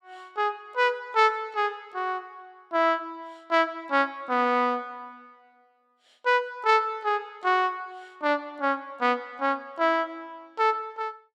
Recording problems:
none

